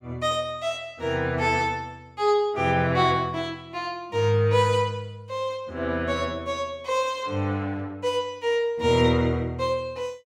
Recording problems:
none

